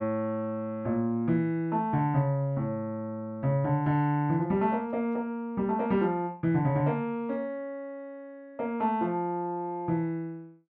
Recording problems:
none

